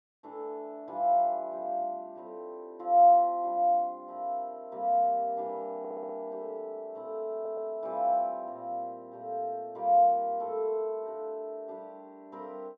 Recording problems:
audio stuttering; at 6 s and at 7.5 s

